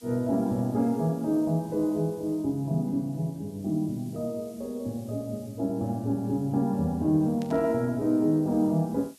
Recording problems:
hiss; slope +2 dB per octave, SNR 27 dB
static burst; at 7.5 s; peak -14 dB vs average level

